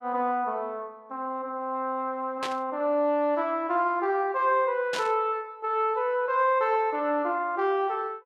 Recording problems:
burst of static; at 2.5 s and at 5 s; peak -2 dB vs average level

